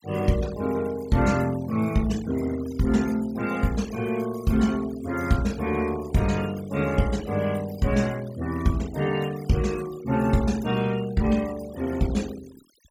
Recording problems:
noise reduction artefacts; signal-to-artefact ratio 18 dB

